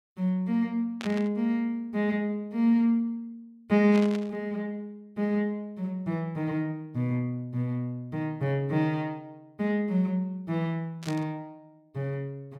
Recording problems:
static burst; at 1 s, at 4 s and at 11 s; peak -6 dB vs average level

